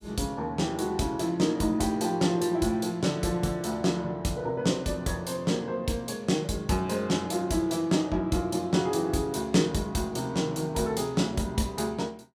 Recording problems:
none

